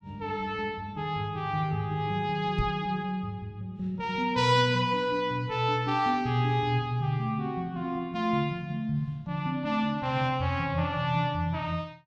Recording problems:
microphone bump; at 2.5 s; peak +3 dB vs average level

